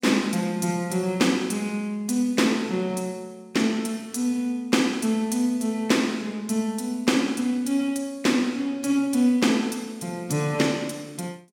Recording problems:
none

